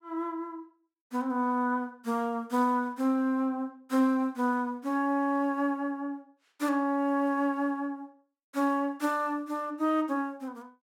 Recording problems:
none

